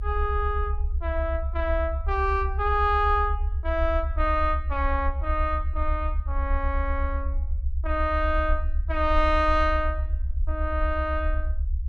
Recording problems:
rumble; below 72 Hz, SNR 2 dB

